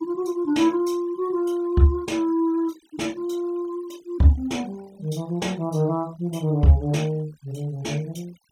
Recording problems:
denoising artefacts; signal-to-artefact ratio 26 dB

